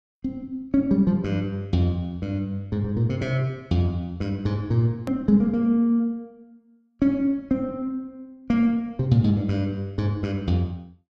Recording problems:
click at an edit; at 5 s

